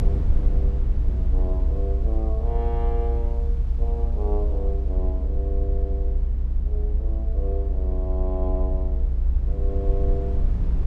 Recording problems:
low-frequency rumble; below 62 Hz, strongest tone 34 Hz, SNR -10 dB
wind noise; below 800 Hz, SNR 21 dB

